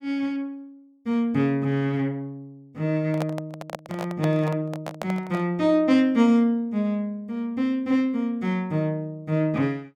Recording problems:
microphone handling noise; from 3 to 5.5 s; peak -3 dB vs average level

